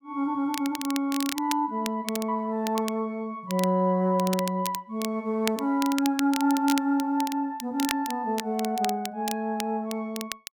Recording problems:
crackling; vinyl, SNR 10 dB

